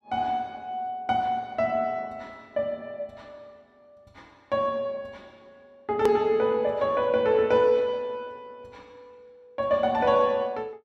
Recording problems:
edit click; at 6 s

